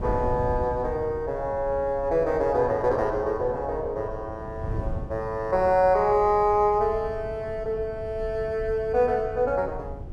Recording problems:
wind on the microphone; below 140 Hz, SNR 13 dB

